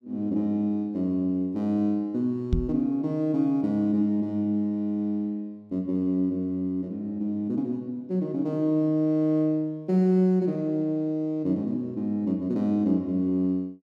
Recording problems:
microphone bump; at 2.5 s; peak +5 dB vs average level

